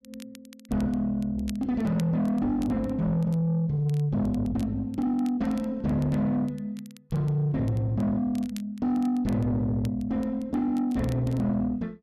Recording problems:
distortion; soft clipping, signal-to-distortion ratio 11 dB
crackle; vinyl, SNR 26 dB

